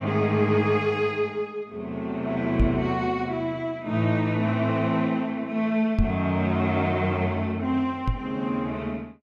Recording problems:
knock on the microphone; at 2.5 s, at 6 s and at 8 s; peak +5 dB vs average level

